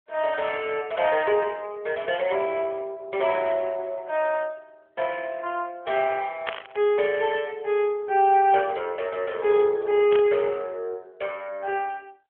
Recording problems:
telephone audio; 340 Hz to 3.4 kHz, AMR-NB
static burst; at 6.5 s and at 10 s; peak +1 dB vs average level

